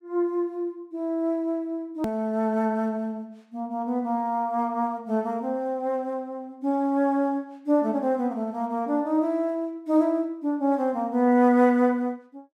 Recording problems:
hard cut with a click; at 2 s

